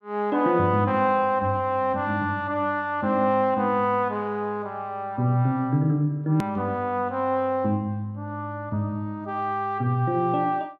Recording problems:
edit click; at 6.5 s

